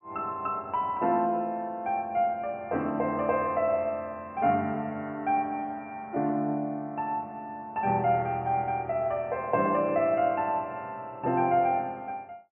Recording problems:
low-pass filter; nothing above 3 kHz

